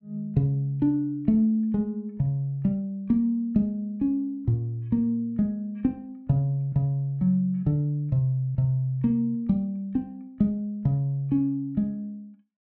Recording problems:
none

